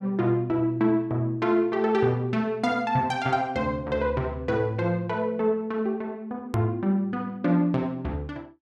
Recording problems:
edit click; at 6.5 s

